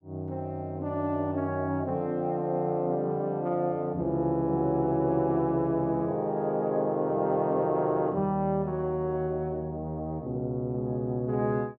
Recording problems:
none

